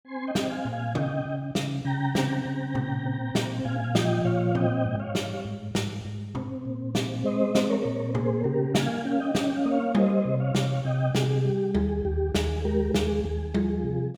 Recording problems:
none

